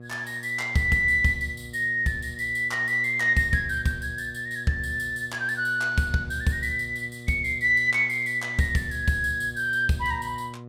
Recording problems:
electrical hum; 60 Hz, harmonics up to 720 Hz, SNR 18 dB

